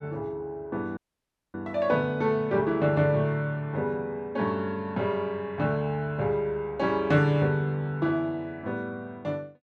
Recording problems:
dropout; at 1 s for 0.5 s

